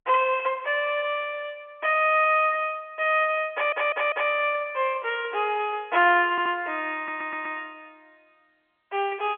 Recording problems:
phone line; 320 Hz to 3.3 kHz, G.711
audio stuttering; at 3.5 s, at 6.5 s and at 7 s

